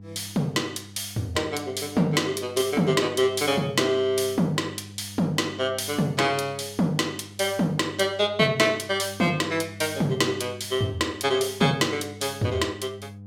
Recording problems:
mains hum; 50 Hz, harmonics up to 500 Hz, SNR 19 dB

